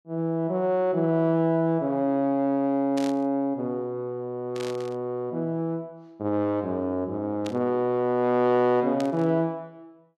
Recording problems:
burst of static; 4 times, first at 3 s; peak -8 dB vs average level

